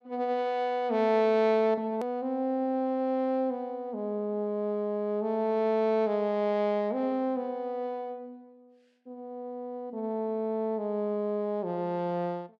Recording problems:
click at an edit; at 2 s

